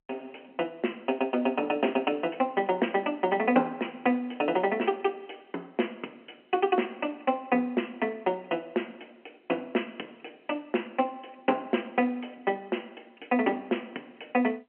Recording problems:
telephone audio; 220 Hz to 3.2 kHz, G.711

